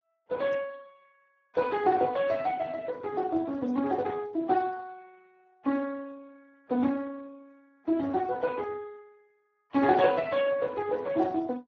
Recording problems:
lossy compression; Vorbis, then Speex, log-spectral distance 3 dB

